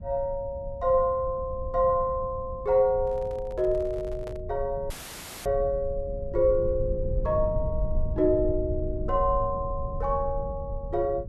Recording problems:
low-frequency rumble; below 84 Hz, SNR 9 dB
microphone handling noise; from 3 to 4.5 s; peak -11 dB vs average level
dropout; at 5 s for 0.5 s; filled with static

